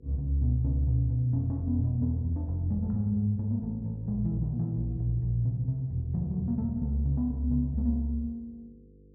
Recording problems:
hum; 50 Hz, harmonics up to 500 Hz, SNR 26 dB

